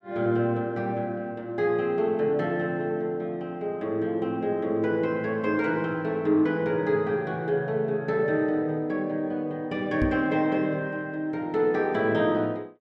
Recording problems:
knock on the microphone; at 10 s; peak +1 dB vs average level

